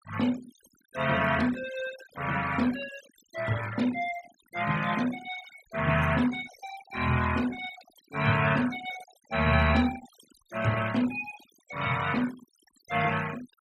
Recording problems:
noise reduction artefacts; signal-to-artefact ratio 14 dB

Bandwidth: 15 kHz